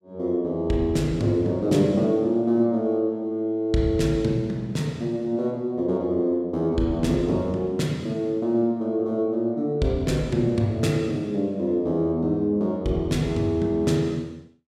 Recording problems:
none

